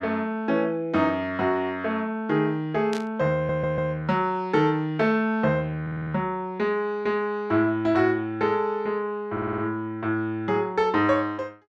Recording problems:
burst of static; at 3 s; peak -7 dB vs average level
audio stuttering; at 3.5 s, at 6 s and at 9.5 s

